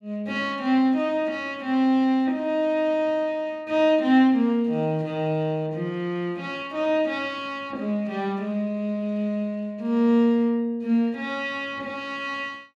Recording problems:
none

